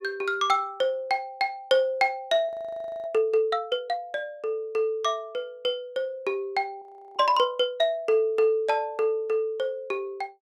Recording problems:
frozen audio; at 2.5 s for 0.5 s and at 7 s

